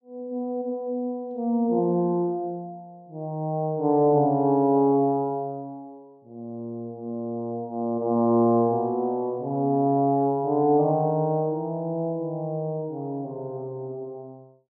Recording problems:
none

